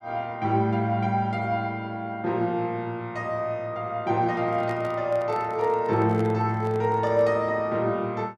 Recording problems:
microphone handling noise; from 4.5 to 7.5 s; peak -9 dB vs average level

